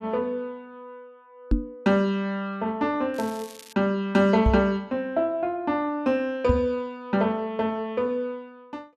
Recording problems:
microphone thump; at 1.5 s, at 4.5 s and at 6.5 s; peak +6 dB vs average level
crackling; at 3 s; loose cable, SNR 20 dB

